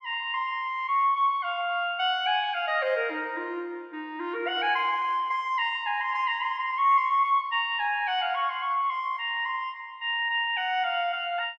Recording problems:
none

